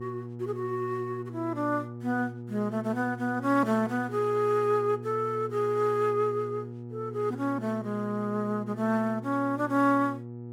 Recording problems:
mains hum; 60 Hz, harmonics up to 840 Hz, SNR 11 dB

